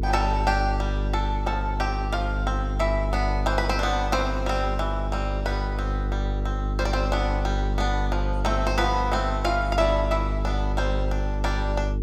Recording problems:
hum; 50 Hz, harmonics up to 450 Hz, SNR 0 dB

